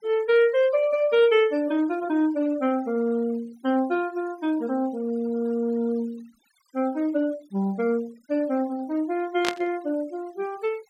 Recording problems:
denoising artefacts; signal-to-artefact ratio 25 dB
static burst; at 9.5 s; peak +2 dB vs average level

